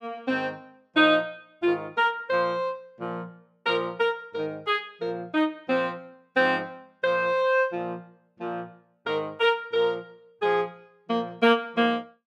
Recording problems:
none

